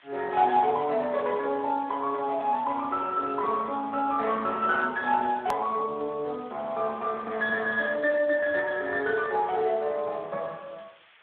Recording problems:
phone line; 300 Hz to 3.4 kHz, Speex
hiss; SNR 27 dB
hard cut with a click; at 5.5 s

